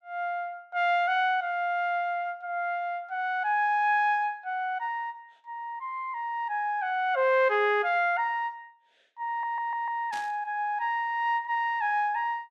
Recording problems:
audio stuttering; at 9.5 s
static burst; at 10 s; peak -11 dB vs average level

